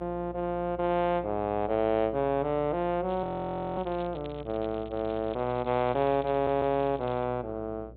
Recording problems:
low-pass filter; nothing above 4 kHz
hum; 60 Hz, harmonics up to 600 Hz, SNR 19 dB
crackling; from 3 to 7 s; loose cable, SNR 25 dB
frozen audio; at 3 s for 0.5 s
audio stuttering; at 6.5 s

